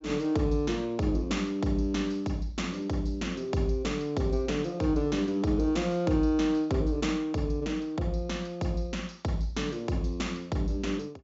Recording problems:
treble missing; nothing above 8 kHz

